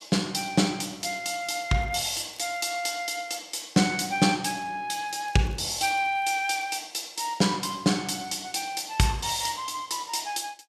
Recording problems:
crackle; from 1 to 3 s and from 5 to 7 s; loose cable, SNR 29 dB

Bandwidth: 14 kHz